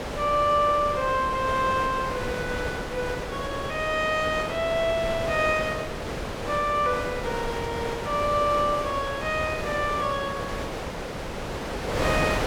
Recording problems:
wind on the microphone; below 1.4 kHz, SNR 5 dB

